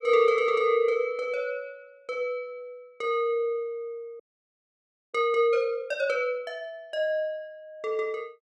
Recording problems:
audio freezing; at 4 s for 1 s

